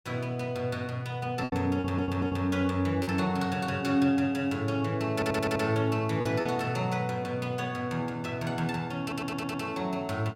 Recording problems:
lost packets; 3% of the sound replaced, filled with repeated pitch periods
audio stuttering; at 2 s, at 5 s and at 9 s

